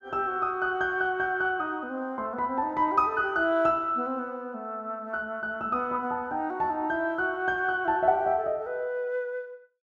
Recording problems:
none

